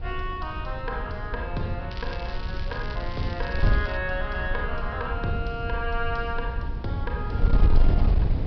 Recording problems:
treble missing; nothing above 5.5 kHz
wind on the microphone; below 72 Hz, SNR -2 dB
crackle; from 2 to 4 s; loose cable, SNR 12 dB

